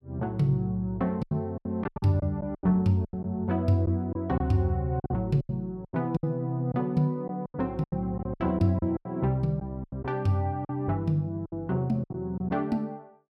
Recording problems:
packet loss; 12% of the sound replaced, filled with silence

